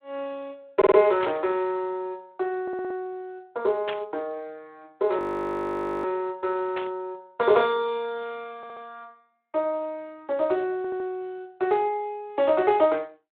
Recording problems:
telephone audio; 320 Hz to 3.9 kHz, Speex
stutter; 4 times, first at 1 s
burst of static; at 1 s, at 4 s and at 7 s; peak -3 dB vs average level
audio freezing; at 5 s for 1 s

